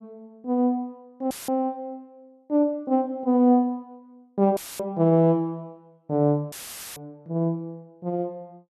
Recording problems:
audio cutting out; at 1.5 s, at 4.5 s and at 6.5 s; filled with static

